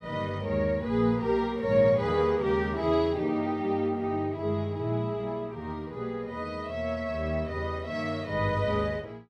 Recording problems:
none

